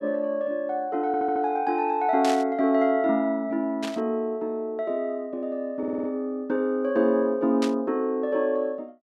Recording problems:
stutter; at 1 s and at 6 s
burst of static; at 2 s, at 4 s and at 7.5 s; peak -4 dB vs average level

